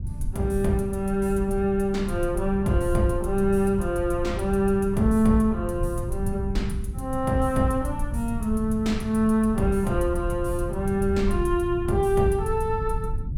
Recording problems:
rumble; below 100 Hz, SNR 7 dB

